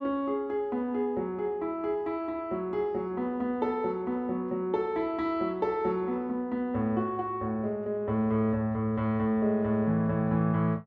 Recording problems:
none

